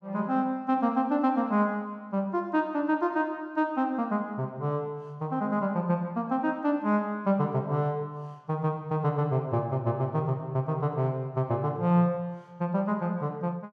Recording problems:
none

